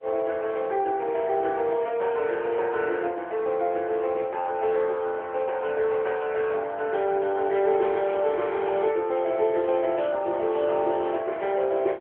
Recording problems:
phone line; 300 Hz to 3.7 kHz, AMR-NB

